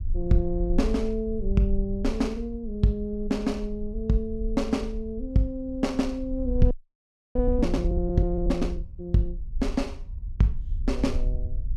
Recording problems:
low-frequency rumble; below 52 Hz, SNR 6 dB
frozen audio; at 6.5 s for 0.5 s

